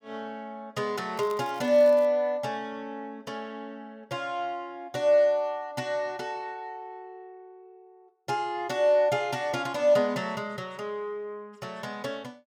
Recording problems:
crackle; at 1 s; loose cable, SNR 25 dB

